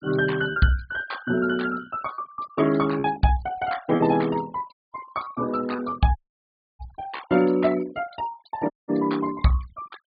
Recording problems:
treble missing; nothing above 4.7 kHz
denoising artefacts; signal-to-artefact ratio 19 dB
packet loss; 4% of the sound replaced, filled with repeated pitch periods
dropout; at 4.5 s, at 6 s for 0.5 s and at 8.5 s

